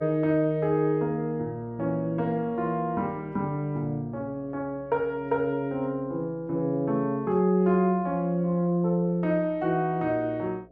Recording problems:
hum; 60 Hz, harmonics up to 720 Hz, SNR 28 dB

